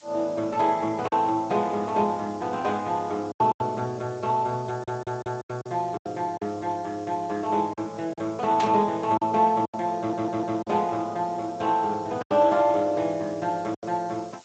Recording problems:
lossy codec; Speex, log-spectral distance 6 dB
background hiss; slope +1 dB per octave, SNR 27 dB
packet loss; 6% of the sound replaced, filled with silence
audio stuttering; at 4.5 s and at 10 s
burst of static; at 8.5 s; peak -2 dB vs average level

